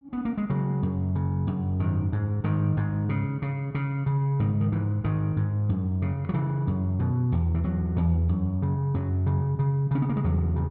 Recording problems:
none

